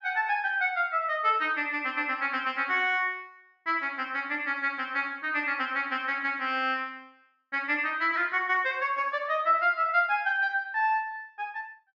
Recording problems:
treble missing; nothing above 7.1 kHz

